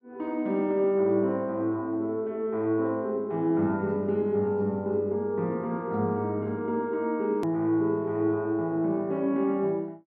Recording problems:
hard cut with a click; at 7.5 s

